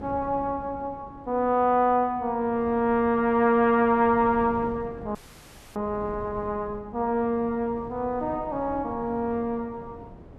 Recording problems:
wind noise; below 380 Hz, SNR 18 dB
audio freezing; at 5 s for 0.5 s

